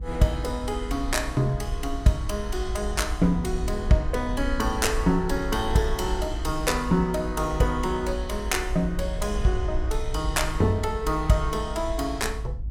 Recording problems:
rumble; below 58 Hz, SNR 7 dB

